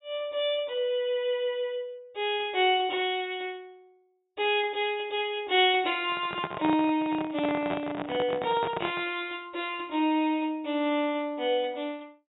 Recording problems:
treble missing; nothing above 4 kHz
handling noise; from 6 to 9 s; peak -1 dB vs average level

